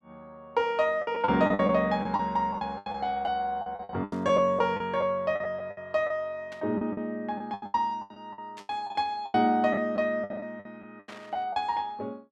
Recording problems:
lost packets; 14% of the sound replaced, filled with the last packet
static burst; 4 times, first at 4 s; peak -13 dB vs average level

